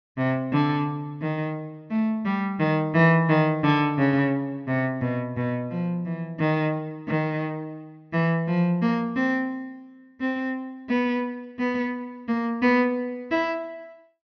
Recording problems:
low-pass filter; nothing above 6.3 kHz

